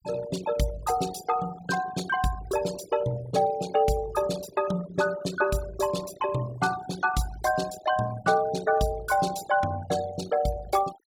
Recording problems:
noise reduction artefacts; signal-to-artefact ratio 15 dB

